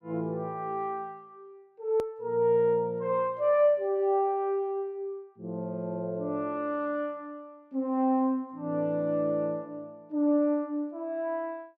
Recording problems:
edit click; at 2 s

